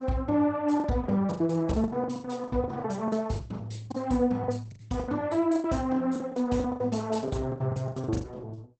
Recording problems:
codec artefacts; Opus, log-spectral distance 3 dB, nothing above 8 kHz
packet loss; 18% of the sound replaced, filled with the last packet

